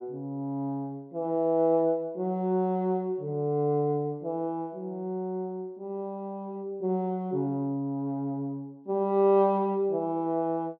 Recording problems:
none

